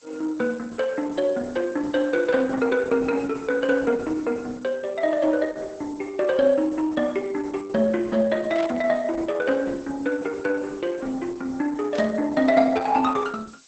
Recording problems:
codec artefacts; Opus, log-spectral distance 5 dB, nothing above 7.8 kHz
background hiss; slope +2 dB per octave, SNR 29 dB
static burst; at 8.5 s and at 12 s; peak -9 dB vs average level

